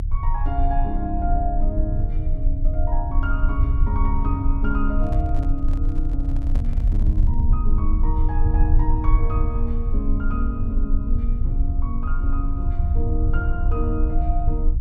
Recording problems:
low-frequency rumble; below 64 Hz, strongest tone 28 Hz, SNR -7 dB
microphone handling noise; from 5 to 7.5 s; peak -4 dB vs average level

